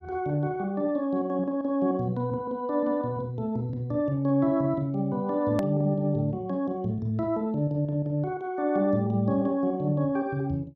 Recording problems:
click at an edit; at 5.5 s

